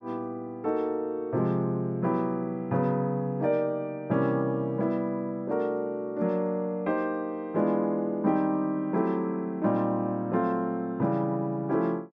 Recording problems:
none

